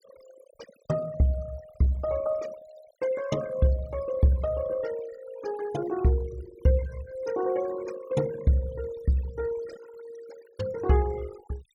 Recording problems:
denoising artefacts; signal-to-artefact ratio 18 dB

